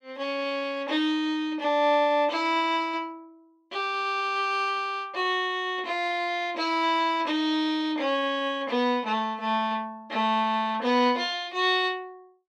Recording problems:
none

